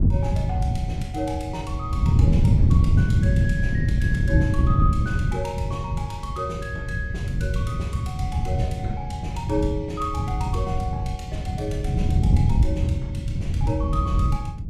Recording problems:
wind on the microphone; below 140 Hz, SNR -8 dB

